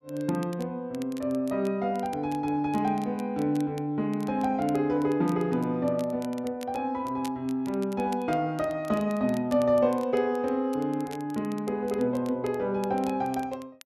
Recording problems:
crackle; vinyl, SNR 23 dB

